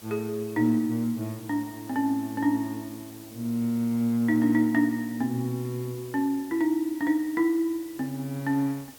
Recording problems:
background hiss; slope -2 dB per octave, SNR 20 dB

